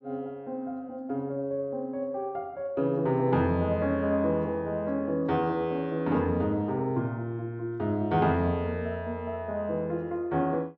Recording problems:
none

